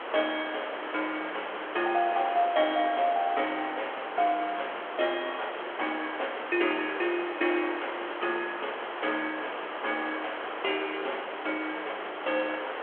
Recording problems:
phone line; 320 Hz to 3.3 kHz, G.726
hiss; SNR 5 dB

